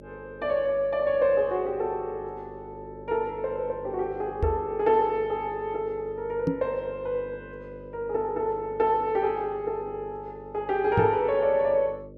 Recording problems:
hum; 50 Hz, harmonics up to 600 Hz, SNR 18 dB
knock on the microphone; at 4.5 s, at 6.5 s and at 11 s; peak +5 dB vs average level

